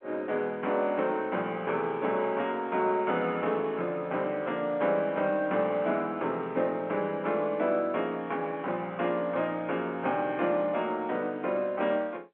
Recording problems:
telephone audio; 240 Hz to 3.3 kHz, G.711

